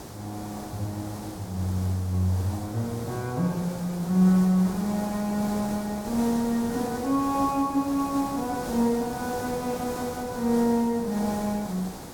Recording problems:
background hiss; SNR 10 dB

